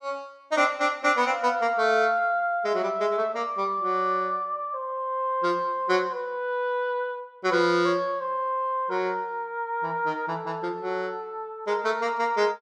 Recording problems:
none

